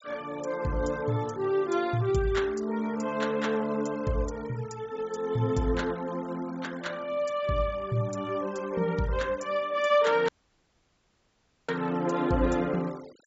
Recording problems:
treble missing; nothing above 8 kHz
denoising artefacts; signal-to-artefact ratio 21 dB
dropout; at 10 s for 1.5 s

